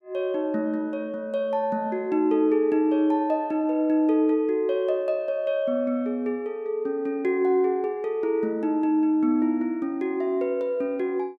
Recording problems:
none

